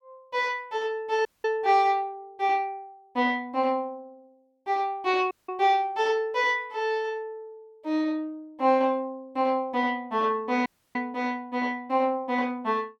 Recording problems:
audio cutting out; at 1.5 s, at 5.5 s and at 11 s

